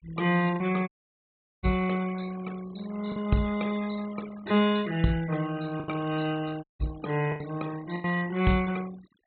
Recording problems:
low-pass filter; nothing above 4 kHz
noise reduction artefacts; signal-to-artefact ratio 17 dB
packet loss; 4% of the sound replaced, filled with the last packet
dropout; at 1 s for 0.5 s and at 6.5 s

